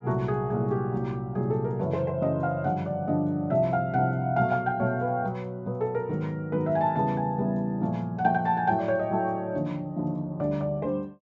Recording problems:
treble cut off; nothing above 8 kHz

